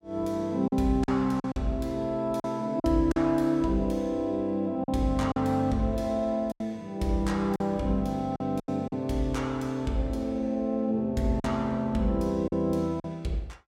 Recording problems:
packet loss; 6% of the sound replaced, filled with silence

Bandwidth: 16.5 kHz